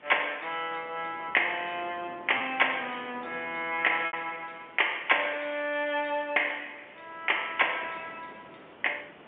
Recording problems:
telephone audio; 280 Hz to 3.3 kHz, G.711
hiss; SNR 27 dB
wind on the microphone; below 980 Hz, SNR 23 dB
lost packets; 1.8% of the sound replaced, filled with repeated pitch periods

